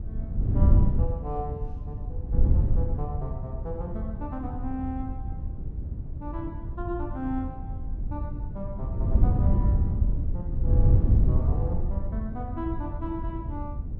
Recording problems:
wind noise; below 100 Hz, SNR -8 dB

